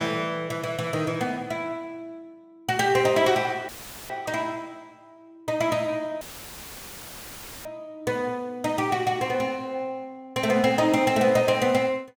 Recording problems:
audio cutting out; at 3.5 s and at 6 s for 1.5 s; filled with static

